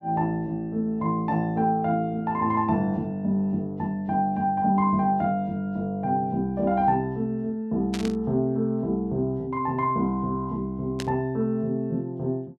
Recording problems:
static burst; at 8 s and at 11 s; peak -5 dB vs average level

